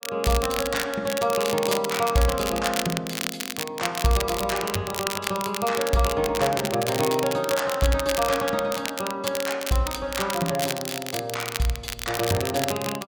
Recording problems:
crackling; vinyl, SNR 5 dB

